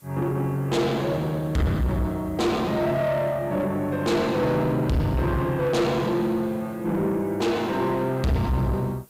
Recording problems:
distortion; soft clipping, signal-to-distortion ratio 7 dB
hiss; slope -1 dB per octave, SNR 29 dB

